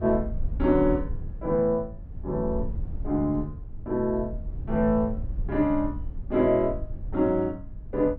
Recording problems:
rumble; below 78 Hz, SNR 10 dB

